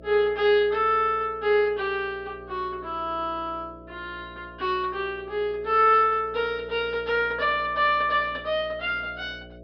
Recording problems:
low-pass filter; nothing above 5.5 kHz
electrical hum; 60 Hz, harmonics up to 660 Hz, SNR 22 dB

